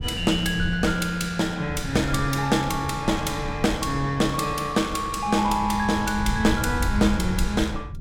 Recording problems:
wind noise; below 110 Hz, SNR 9 dB

